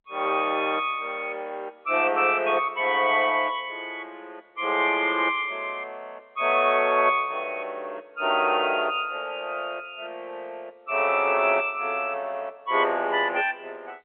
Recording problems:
phone line; 340 Hz to 3.3 kHz, G.711

